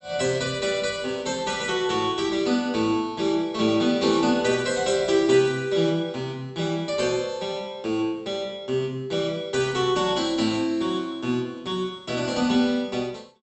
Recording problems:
low-pass filter; nothing above 8 kHz

